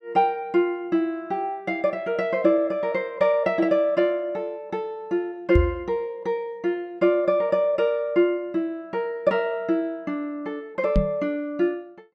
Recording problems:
microphone thump; at 5.5 s and at 11 s; peak +7 dB vs average level

